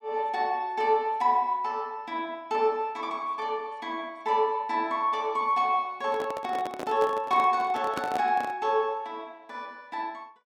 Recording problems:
microphone handling noise; from 6 to 8.5 s; peak -1 dB vs average level

